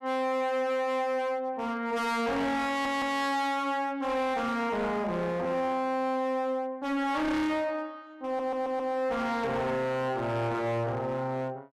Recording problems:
distorted audio; hard clipping, signal-to-distortion ratio 7 dB
stutter; at 2.5 s and at 8.5 s

